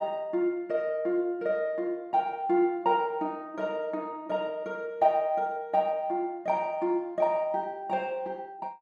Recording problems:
none

